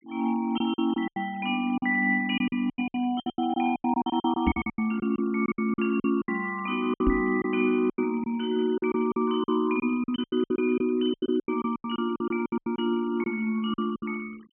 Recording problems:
low-pass filter; nothing above 3.2 kHz
noise reduction artefacts; signal-to-artefact ratio 26 dB
lost packets; 17% of the sound replaced, filled with silence
microphone bump; at 4.5 s and at 7 s; peak +4 dB vs average level

